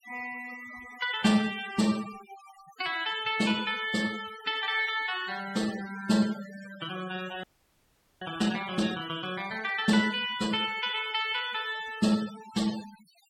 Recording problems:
denoising artefacts; signal-to-artefact ratio 15 dB
audio freezing; at 7.5 s for 1 s

